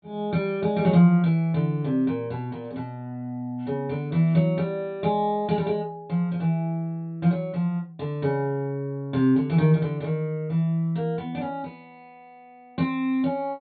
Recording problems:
low-pass filter; nothing above 4.4 kHz

